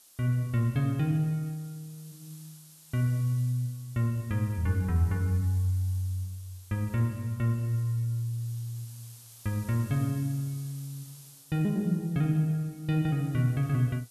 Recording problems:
background hiss; SNR 22 dB

